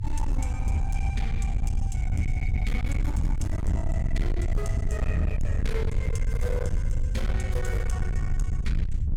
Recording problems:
distortion; hard clipping, signal-to-distortion ratio 8 dB
low-frequency rumble; below 84 Hz, SNR -5 dB

